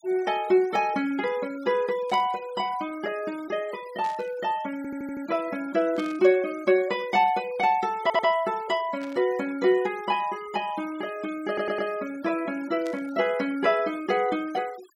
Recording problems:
noise reduction artefacts; signal-to-artefact ratio 22 dB
burst of static; 5 times, first at 2 s; peak -13 dB vs average level
audio stuttering; at 5 s, at 8 s and at 11 s

